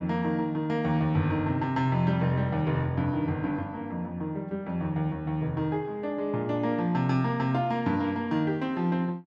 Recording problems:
none

